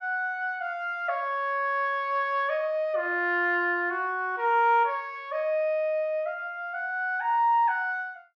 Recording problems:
none

